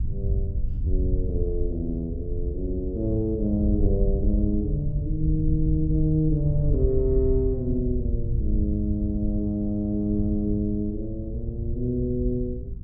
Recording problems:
wind noise; below 82 Hz, SNR 2 dB

